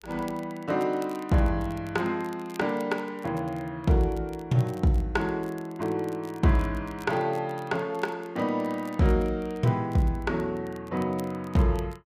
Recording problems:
crackling; vinyl, SNR 26 dB

